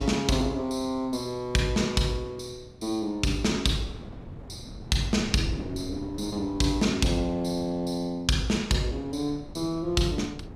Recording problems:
wind on the microphone; below 250 Hz, SNR 16 dB

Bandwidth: 15 kHz